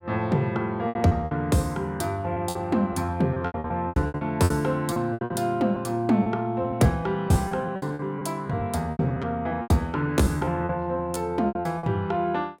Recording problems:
lost packets; 14% of the sound replaced, filled with repeated pitch periods

